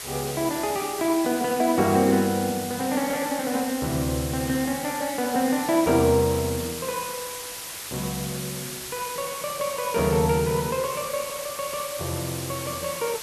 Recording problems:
hiss; slope 0 dB per octave, SNR 8 dB

